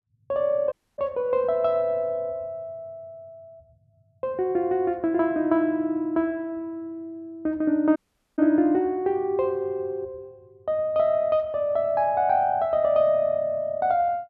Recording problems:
dropout; at 0.5 s and at 8 s

